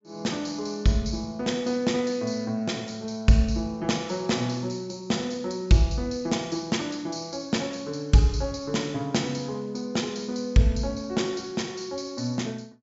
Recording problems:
treble cut off; nothing above 8 kHz

